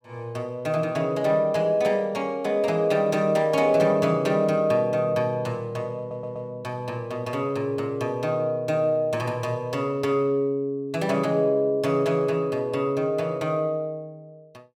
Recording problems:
audio stuttering; at 6 s

